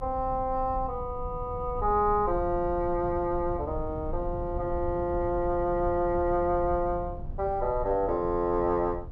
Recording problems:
low-frequency rumble; below 94 Hz, SNR 11 dB

